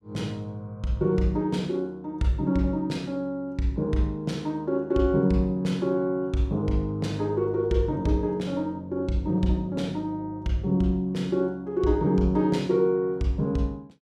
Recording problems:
none

